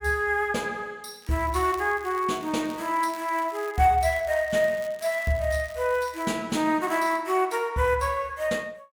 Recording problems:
crackling; from 1 to 4 s, from 4 to 6.5 s and at 7 s; loose cable, SNR 23 dB

